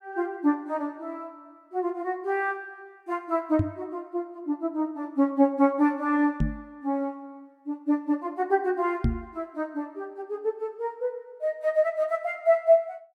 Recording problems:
microphone bump; at 3.5 s, at 6.5 s and at 9 s; peak +6 dB vs average level

